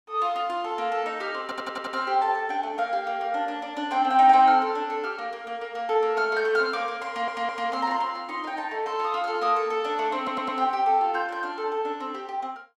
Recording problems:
stutter; at 1.5 s, at 7 s and at 10 s

